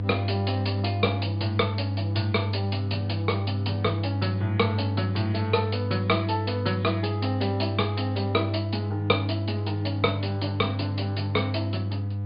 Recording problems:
treble cut off; nothing above 4.9 kHz
hum; 50 Hz, harmonics up to 500 Hz, SNR 0 dB

